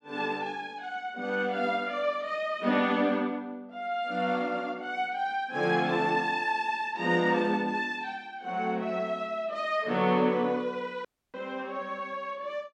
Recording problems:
dropout; at 11 s

